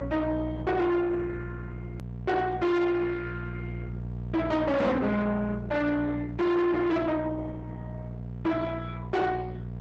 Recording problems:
lossy compression; Opus, log-spectral distance 2 dB
distorted audio; soft clipping, signal-to-distortion ratio 6 dB
hum; 60 Hz, harmonics up to 660 Hz, SNR 8 dB
hard cut with a click; at 2 s

